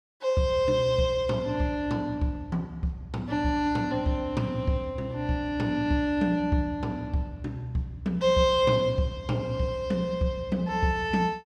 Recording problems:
none

